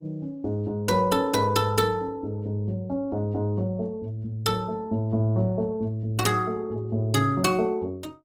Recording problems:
lossy codec; Opus, log-spectral distance 2 dB

